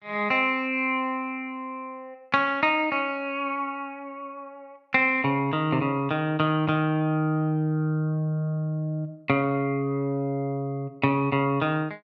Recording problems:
none

